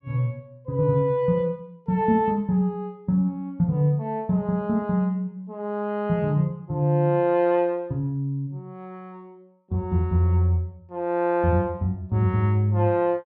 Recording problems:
none

